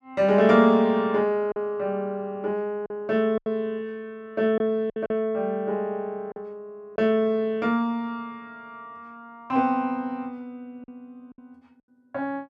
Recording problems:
lost packets; 4% of the sound replaced, filled with silence

